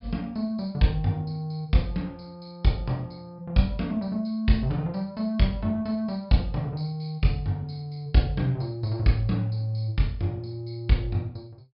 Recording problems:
treble cut off; nothing above 5.5 kHz

